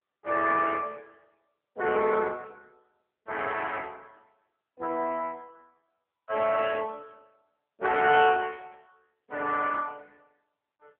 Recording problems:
phone line; 300 Hz to 3.3 kHz, AMR-NB

